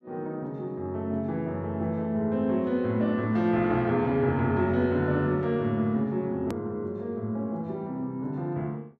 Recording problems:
click at an edit; at 6.5 s

